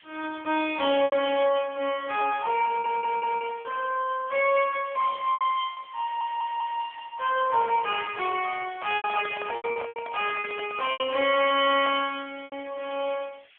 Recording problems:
phone line; 320 Hz to 3.3 kHz, AMR-NB
hiss; SNR 28 dB
lost packets; 6% of the sound replaced, filled with repeated pitch periods
audio stuttering; at 2.5 s and at 6 s
microphone handling noise; from 8.5 to 12 s; peak -7 dB vs average level

